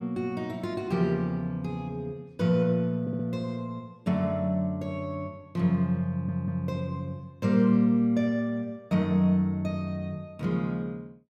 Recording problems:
stutter; at 3 s and at 6 s

